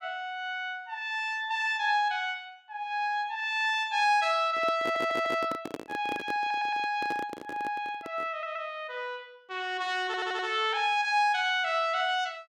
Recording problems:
handling noise; from 4.5 to 8.5 s; peak -3 dB vs average level
stutter; 4 times, first at 5 s

